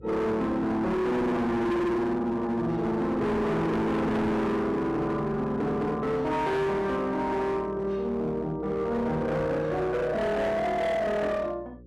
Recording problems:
distortion; hard clipping, signal-to-distortion ratio 7 dB
hum; 60 Hz, harmonics up to 540 Hz, SNR 21 dB

